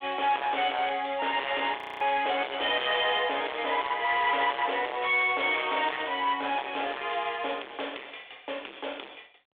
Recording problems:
phone line; 320 Hz to 3.6 kHz, G.726
distortion; hard clipping, signal-to-distortion ratio 9 dB
audio freezing; at 2 s

